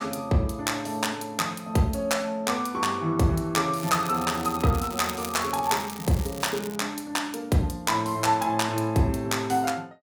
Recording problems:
crackle; from 4 to 7 s; loose cable, SNR 13 dB

